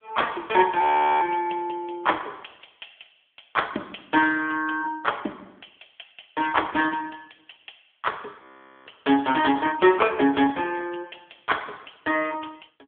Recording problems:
phone line; 240 Hz to 3.4 kHz, AMR-NB
audio freezing; at 1 s and at 8.5 s

